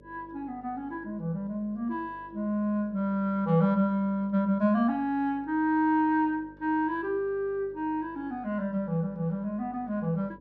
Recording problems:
hum; 50 Hz, harmonics up to 600 Hz, SNR 26 dB

